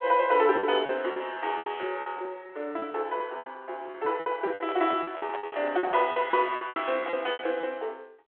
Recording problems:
telephone audio; 300 Hz to 3.4 kHz, G.726
packet loss; 17% of the sound replaced, filled with repeated pitch periods
handling noise; from 4.5 to 6 s; peak -5 dB vs average level

